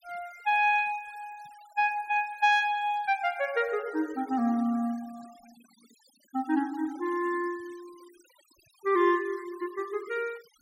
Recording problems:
denoising artefacts; signal-to-artefact ratio 25 dB

